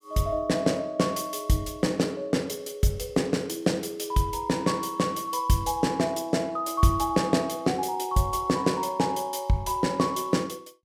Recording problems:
none

